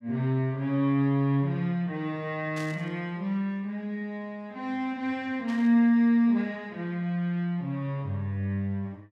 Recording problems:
burst of static; at 2.5 s and at 5.5 s; peak -12 dB vs average level

